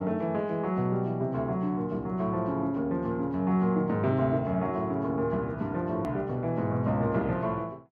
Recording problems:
edit click; at 6 s

